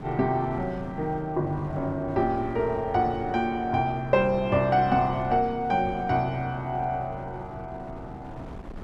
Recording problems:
wind noise; below 400 Hz, SNR 16 dB

